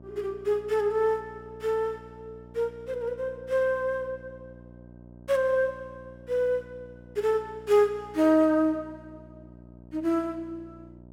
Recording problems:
hum; 60 Hz, harmonics up to 960 Hz, SNR 22 dB

